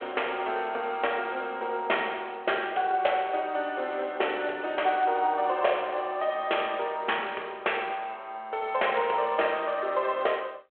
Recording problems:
phone line; 320 Hz to 3.3 kHz, G.726

